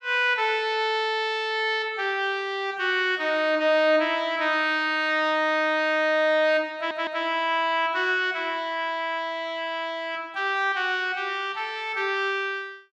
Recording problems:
audio stuttering; at 7 s

